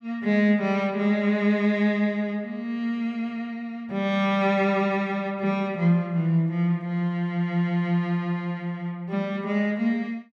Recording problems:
none

